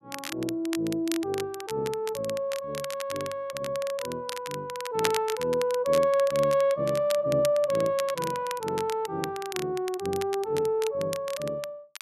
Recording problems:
crackling; vinyl, SNR 11 dB

